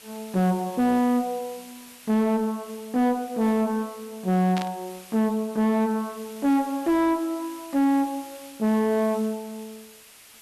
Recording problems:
distortion; soft clipping, signal-to-distortion ratio 6 dB
hiss; slope +1 dB per octave, SNR 20 dB
burst of static; at 4.5 s; peak -5 dB vs average level

